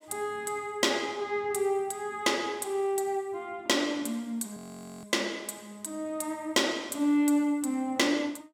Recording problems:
audio freezing; at 4.5 s

